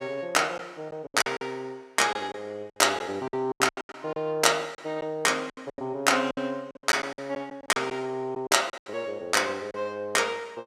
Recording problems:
lost packets; 12% of the sound replaced, filled with silence

